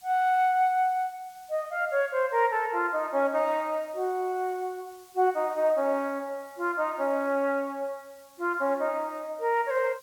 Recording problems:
hiss; slope +3 dB per octave, SNR 28 dB

